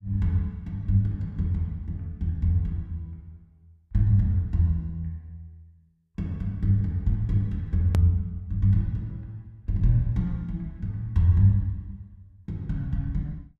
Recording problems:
edit click; at 8 s

